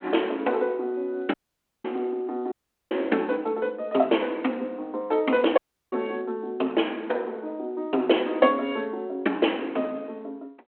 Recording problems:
phone line; 220 Hz to 3.3 kHz, G.726
dropout; at 1.5 s for 0.5 s, at 2.5 s and at 5.5 s

